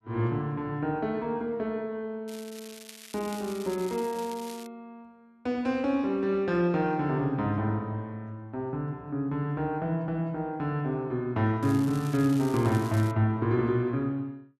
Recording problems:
crackling; from 2.5 to 4.5 s and from 12 to 13 s; loose cable, SNR 17 dB

